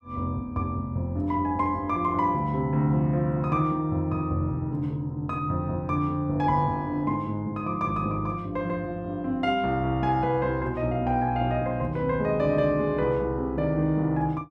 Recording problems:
none

